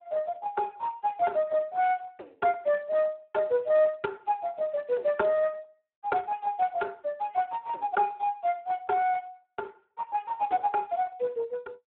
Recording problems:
phone line; 320 Hz to 2.7 kHz, Speex

